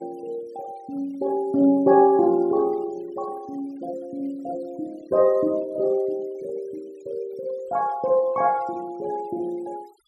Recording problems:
denoising artefacts; signal-to-artefact ratio 28 dB

